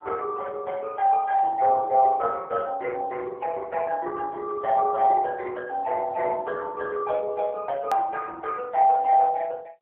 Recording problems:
phone line; 340 Hz to 2.1 kHz, AMR-NB
edit click; at 8 s

